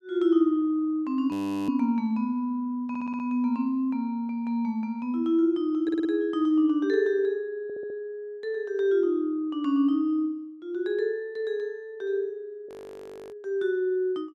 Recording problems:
audio freezing; at 1.5 s and at 13 s for 0.5 s
audio stuttering; at 3 s, at 6 s and at 7.5 s

